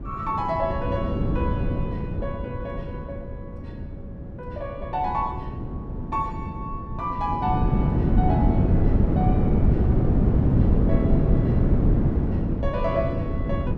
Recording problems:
wind noise; below 230 Hz, SNR -6 dB

